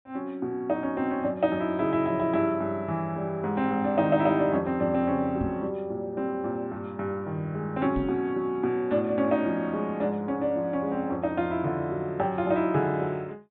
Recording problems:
treble missing; nothing above 4 kHz
knock on the microphone; at 5.5 s and at 8 s; peak -1 dB vs average level

